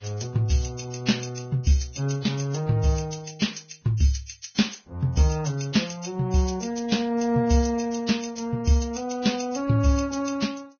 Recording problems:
lossy compression; Vorbis, log-spectral distance 5 dB, nothing above 6.5 kHz

